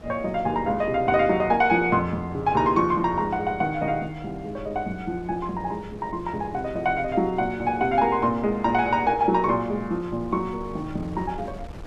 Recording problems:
wind on the microphone; below 310 Hz, SNR 19 dB

